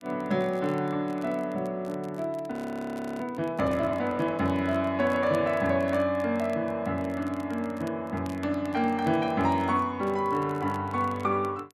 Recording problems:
crackle; vinyl, SNR 27 dB
frozen audio; at 2.5 s for 0.5 s

